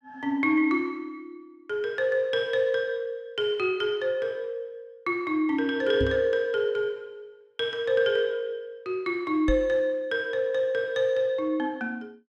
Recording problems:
knock on the microphone; at 6 s and at 9.5 s; peak +1 dB vs average level

